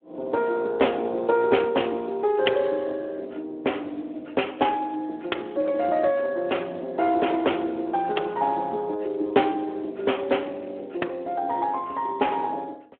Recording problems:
phone line; 280 Hz to 3.3 kHz, Speex

